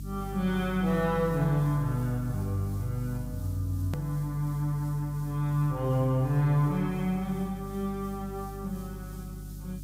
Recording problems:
hum; 50 Hz, harmonics up to 300 Hz, SNR 11 dB
background hiss; SNR 23 dB
hard cut with a click; at 4 s

